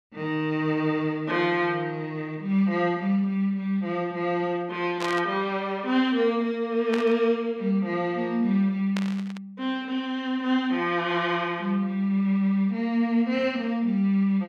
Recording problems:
static burst; at 5 s, at 7 s and at 9 s; peak -4 dB vs average level

